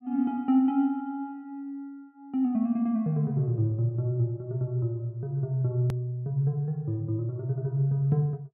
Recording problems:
click at an edit; at 6 s

